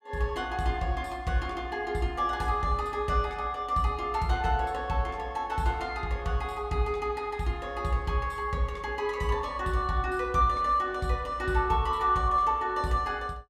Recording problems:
none

